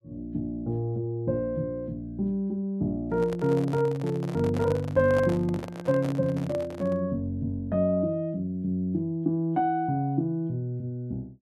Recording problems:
handling noise; from 3 to 7 s; peak -4 dB vs average level

